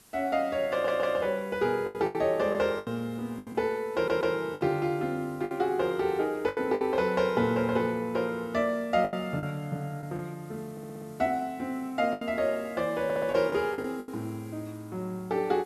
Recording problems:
hiss; slope -2 dB per octave, SNR 27 dB
lost packets; 7% of the sound replaced, filled with the last packet
audio stuttering; 4 times, first at 0.5 s

